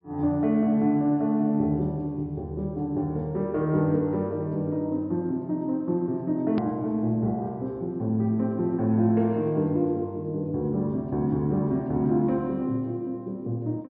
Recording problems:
treble missing; nothing above 5.5 kHz
click at an edit; at 6.5 s

